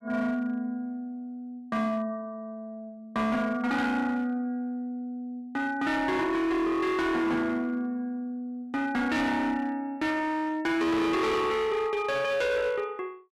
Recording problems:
distortion; hard clipping, uneven, signal-to-distortion ratio 7 dB

